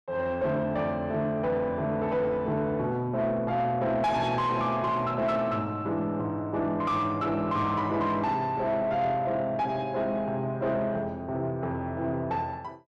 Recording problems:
distortion; soft clipping, signal-to-distortion ratio 10 dB

